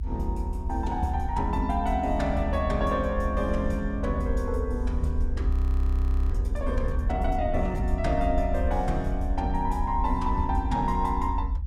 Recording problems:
rumble; below 72 Hz, SNR 1 dB
audio freezing; at 5.5 s for 1 s

